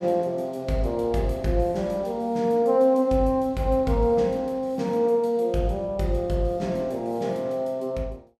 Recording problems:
none

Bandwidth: 15 kHz